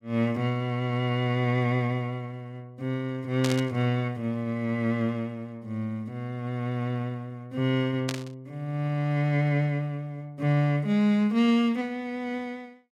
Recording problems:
burst of static; at 3.5 s and at 8 s; peak 0 dB vs average level

